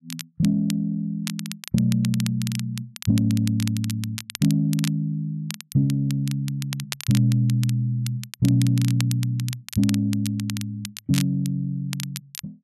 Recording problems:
crackling; vinyl, SNR 12 dB

